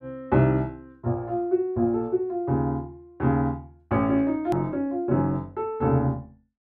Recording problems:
edit click; at 4.5 s

